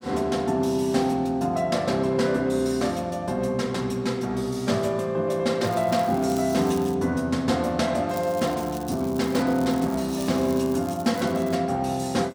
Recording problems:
crackling; from 5.5 to 7 s and from 8 to 12 s; loose cable, SNR 20 dB

